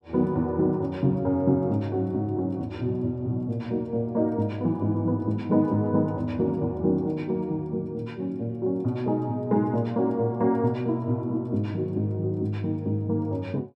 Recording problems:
none

